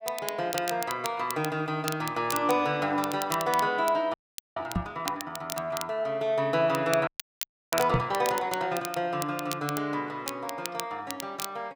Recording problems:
crackling; vinyl, SNR 10 dB
audio freezing; at 4 s and at 7 s for 0.5 s
microphone bump; at 5 s and at 8 s; peak +6 dB vs average level

